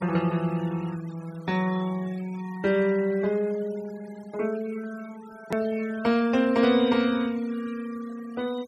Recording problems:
noise reduction artefacts; signal-to-artefact ratio 21 dB
click at an edit; at 5.5 s

